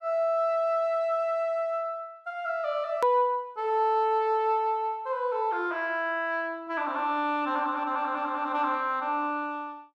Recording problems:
hard cut with a click; at 3 s

